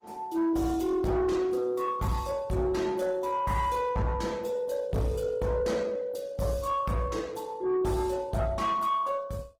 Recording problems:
lossy codec; Opus, log-spectral distance 3 dB
distortion; soft clipping, signal-to-distortion ratio 10 dB

